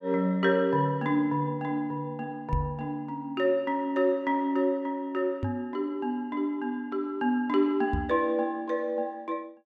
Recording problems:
microphone thump; at 2.5 s, at 5.5 s and at 8 s; peak +2 dB vs average level

